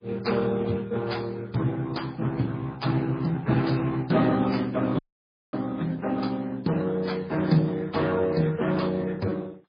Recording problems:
codec artefacts; Speex, then MP3, log-spectral distance 4 dB, nothing above 11.3 kHz
audio cutting out; at 5 s for 0.5 s

